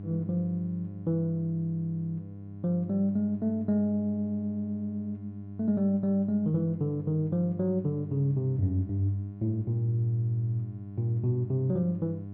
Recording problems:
electrical hum; 50 Hz, harmonics up to 700 Hz, SNR 12 dB

